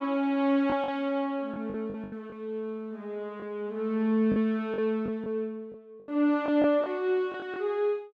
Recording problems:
lost packets; 8% of the sound replaced, filled with the last packet

